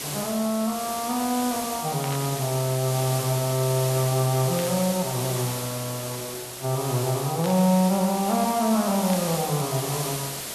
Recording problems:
background hiss; SNR 6 dB
burst of static; 4 times, first at 2 s; peak -7 dB vs average level

